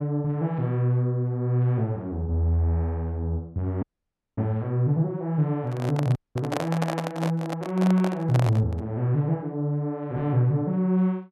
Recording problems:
audio cutting out; at 4 s for 0.5 s and at 6 s
handling noise; from 5.5 to 9 s; peak +1 dB vs average level

